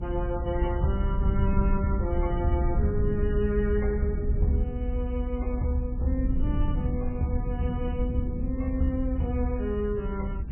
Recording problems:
lossy compression; MP3, log-spectral distance 2 dB, nothing above 2.5 kHz
hum; 50 Hz, harmonics up to 1.4 kHz, SNR 27 dB
low-frequency rumble; below 86 Hz, SNR -1 dB

